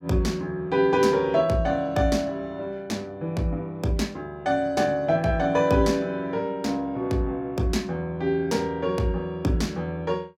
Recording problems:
none

